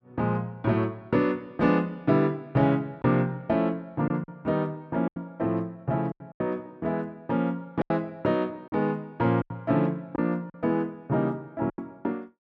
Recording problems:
lost packets; 5% of the sound replaced, filled with silence

